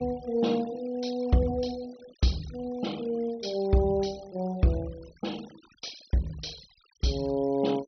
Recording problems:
low-pass filter; nothing above 6 kHz
noise reduction artefacts; signal-to-artefact ratio 21 dB

